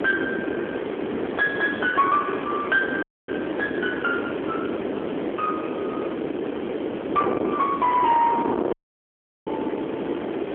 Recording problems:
telephone audio; 340 Hz to 3 kHz, AMR-NB
distortion; soft clipping, signal-to-distortion ratio 15 dB
background hiss; SNR 14 dB
wind noise; below 540 Hz, SNR 4 dB
audio cutting out; at 3 s and at 8.5 s for 0.5 s

